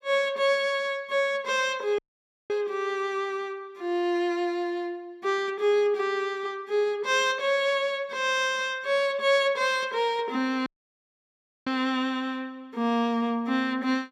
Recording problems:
audio cutting out; at 2 s for 0.5 s and at 11 s for 1 s

